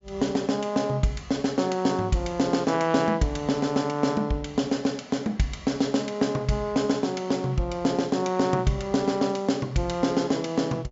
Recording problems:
treble missing; nothing above 7.3 kHz

